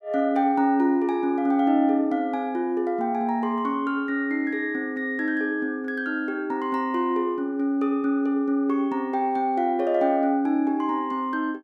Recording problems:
none

